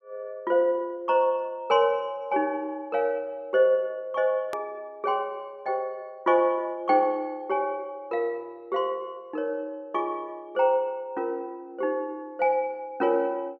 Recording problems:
hard cut with a click; at 4.5 s

